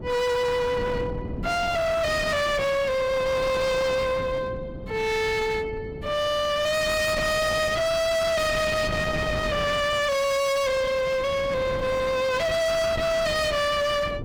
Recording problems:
distorted audio; hard clipping, uneven, signal-to-distortion ratio 5 dB
wind on the microphone; below 630 Hz, SNR 10 dB

